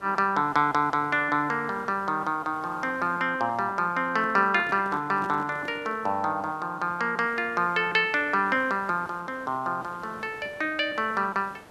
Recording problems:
background hiss; SNR 23 dB
microphone handling noise; from 4 to 6 s; peak -11 dB vs average level

